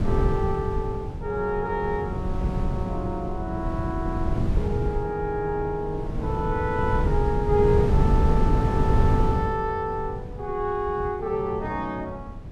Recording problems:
wind on the microphone; below 150 Hz, SNR -1 dB

